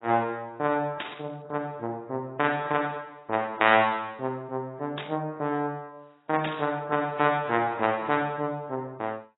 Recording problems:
lossy compression; AAC, log-spectral distance 3 dB, nothing above 3.4 kHz
static burst; at 1 s, at 5 s and at 6.5 s; peak -1 dB vs average level

